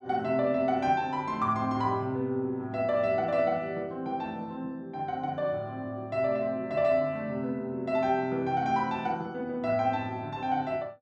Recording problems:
none

